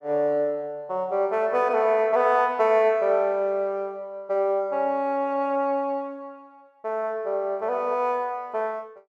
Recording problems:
none

